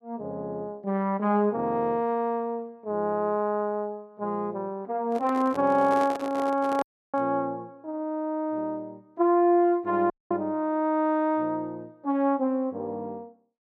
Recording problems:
handling noise; from 5 to 7 s; peak -6 dB vs average level
dropout; at 7 s and at 10 s

